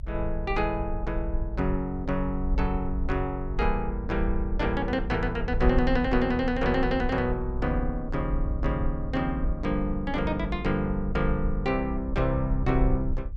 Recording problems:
rumble; below 56 Hz, SNR 5 dB

